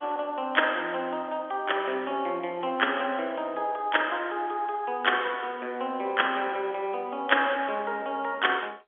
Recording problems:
telephone audio; 220 Hz to 3.4 kHz, G.711

